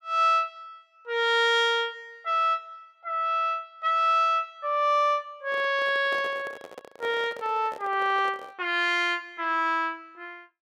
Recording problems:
handling noise; from 5.5 to 8.5 s; peak -10 dB vs average level

